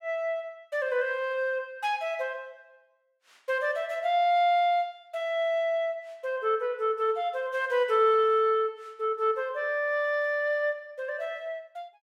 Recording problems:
none

